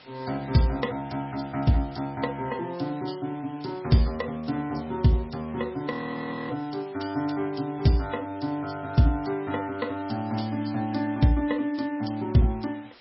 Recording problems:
lossy codec; MP3, log-spectral distance 6 dB, nothing above 5.5 kHz
background hiss; SNR 23 dB
frozen audio; at 6 s for 0.5 s

